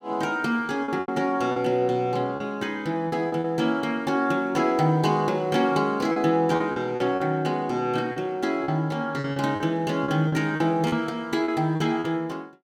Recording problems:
lost packets; 8% of the sound replaced, filled with repeated pitch periods

